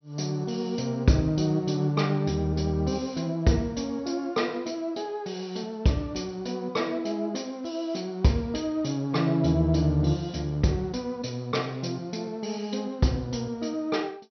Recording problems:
treble cut off; nothing above 6 kHz

